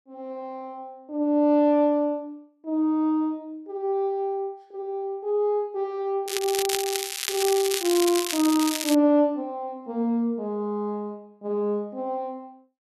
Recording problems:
crackling; from 6.5 to 9 s; loose cable, SNR 4 dB

